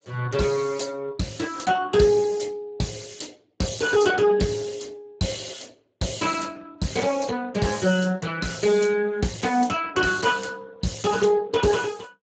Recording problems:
codec artefacts; Speex, log-spectral distance 6 dB, nothing above 7.6 kHz

